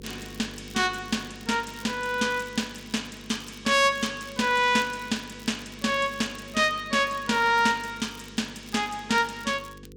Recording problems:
electrical hum; 50 Hz, harmonics up to 500 Hz, SNR 22 dB
crackle; vinyl, SNR 24 dB

